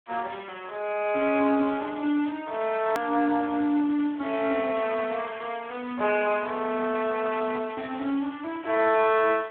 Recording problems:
telephone audio; 260 Hz to 3.5 kHz, Speex
hiss; SNR 23 dB
click at an edit; at 3 s

